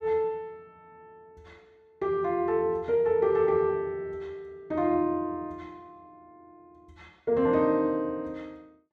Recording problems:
none

